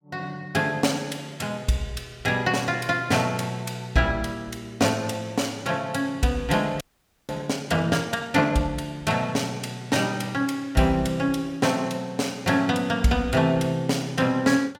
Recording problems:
audio freezing; at 7 s

